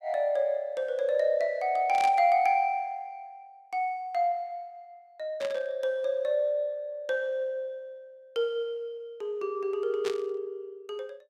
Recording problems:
burst of static; at 2 s, at 5.5 s and at 10 s; peak -5 dB vs average level

